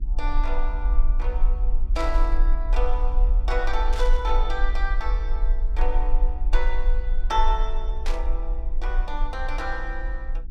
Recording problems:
mains hum; 60 Hz, harmonics up to 360 Hz, SNR 14 dB
low-frequency rumble; below 38 Hz, strongest tone 18 Hz, SNR -5 dB
burst of static; at 2 s, at 4 s and at 8 s; peak -1 dB vs average level

